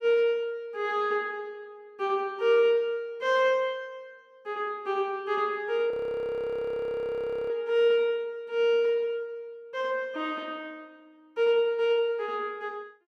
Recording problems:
frozen audio; at 6 s for 1.5 s

